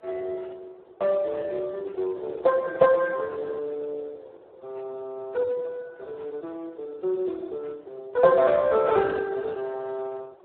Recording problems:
phone line; 320 Hz to 2 kHz, Speex
wind on the microphone; below 620 Hz, SNR 21 dB

